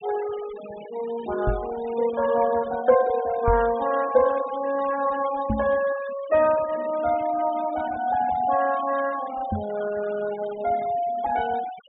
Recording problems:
treble cut off; nothing above 4 kHz
noise reduction artefacts; signal-to-artefact ratio 17 dB
knock on the microphone; 4 times, first at 1.5 s; peak +2 dB vs average level

